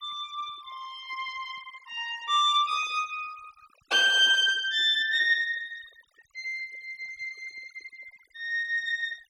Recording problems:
denoising artefacts; signal-to-artefact ratio 24 dB

